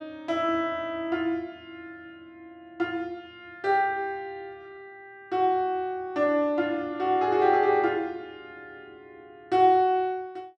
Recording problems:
none

